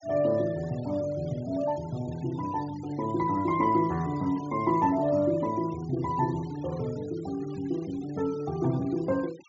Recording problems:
treble cut off; nothing above 7.3 kHz
noise reduction artefacts; signal-to-artefact ratio 22 dB

